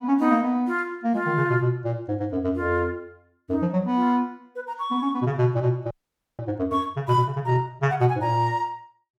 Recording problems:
audio freezing; at 6 s

